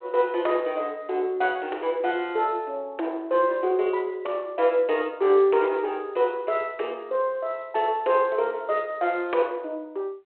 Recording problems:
phone line; 300 Hz to 3.4 kHz, G.726

